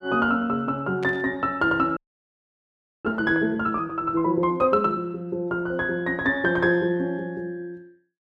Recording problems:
static burst; at 1 s; peak -10 dB vs average level
audio freezing; at 2 s for 1 s

